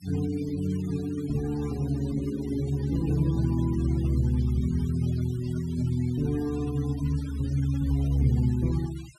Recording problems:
denoising artefacts; signal-to-artefact ratio 21 dB

